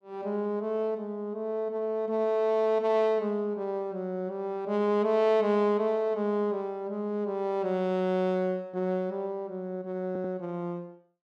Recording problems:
audio stuttering; at 10 s

